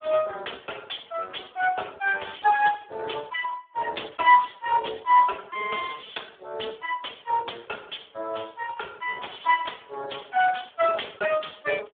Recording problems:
phone line; 340 Hz to 3 kHz, Speex

